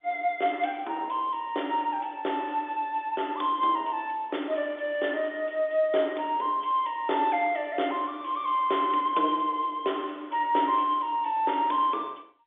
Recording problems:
phone line; 240 Hz to 3.6 kHz, G.711

